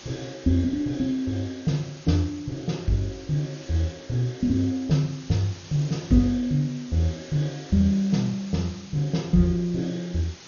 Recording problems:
codec artefacts; MP2, log-spectral distance 8 dB, nothing above 6.3 kHz
hiss; slope 0 dB per octave, SNR 20 dB

